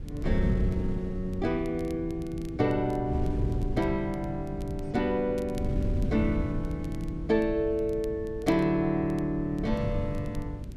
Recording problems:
wind noise; below 140 Hz, SNR 5 dB
crackling; vinyl, SNR 27 dB

